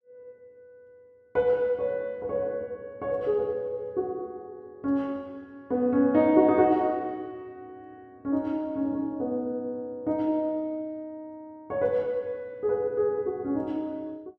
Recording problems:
none

